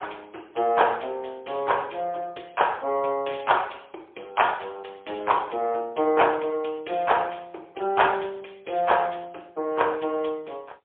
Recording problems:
telephone audio; 320 Hz to 3.4 kHz, AMR-NB, then MP3

